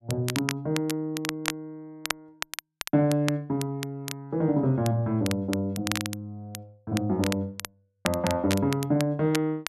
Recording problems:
crackling; vinyl, SNR 8 dB

